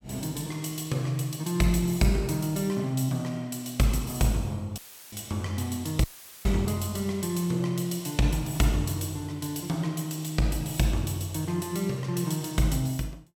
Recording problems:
dropout; at 5 s and at 6 s; filled with static

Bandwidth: 17 kHz